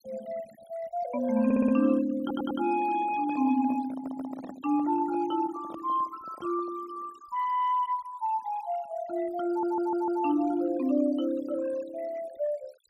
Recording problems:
denoising artefacts; signal-to-artefact ratio 21 dB
stutter; 4 times, first at 1.5 s
microphone handling noise; from 3 to 7 s; peak -10 dB vs average level

